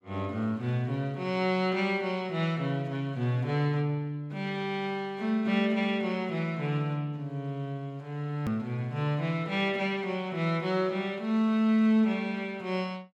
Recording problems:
click at an edit; at 8.5 s

